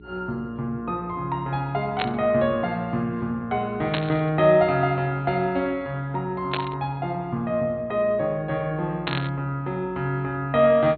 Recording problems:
treble missing; nothing above 4.3 kHz
hum; 60 Hz, harmonics up to 420 Hz, SNR 23 dB
burst of static; 4 times, first at 2 s; peak +2 dB vs average level

